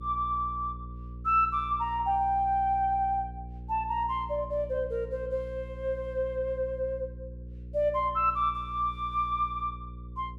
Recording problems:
hum; 60 Hz, harmonics up to 540 Hz, SNR 13 dB

